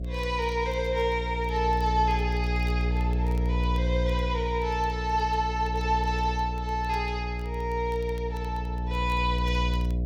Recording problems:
hum; 60 Hz, harmonics up to 660 Hz, SNR 1 dB
crackling; vinyl, SNR 28 dB

